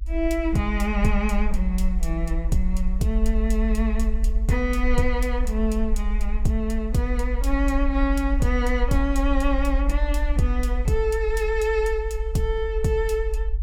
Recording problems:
rumble; below 54 Hz, SNR 1 dB

